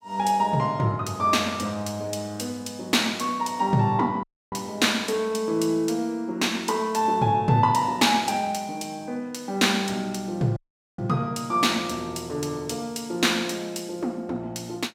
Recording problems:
dropout; at 4 s and at 11 s

